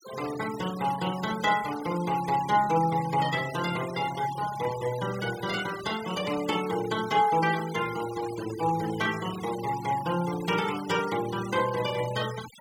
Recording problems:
denoising artefacts; signal-to-artefact ratio 13 dB

